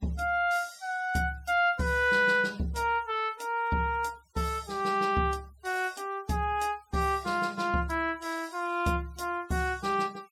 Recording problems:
denoising artefacts; signal-to-artefact ratio 25 dB

